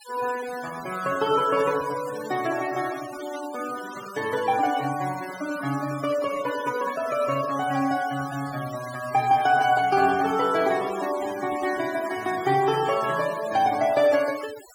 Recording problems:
denoising artefacts; signal-to-artefact ratio 15 dB

